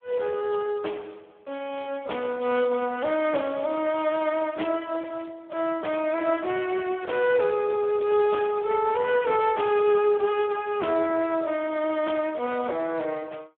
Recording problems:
phone line; 280 Hz to 3.4 kHz, Speex

